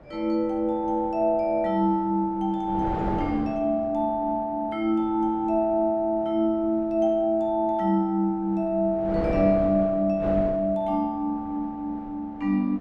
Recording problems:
wind noise; below 620 Hz, SNR 14 dB

